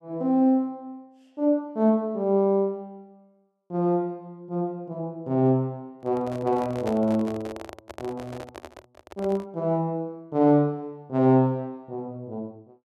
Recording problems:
microphone handling noise; from 6 to 9.5 s; peak -5 dB vs average level

